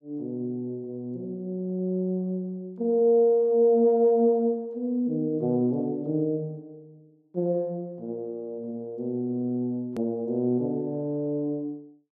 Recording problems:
hard cut with a click; at 10 s

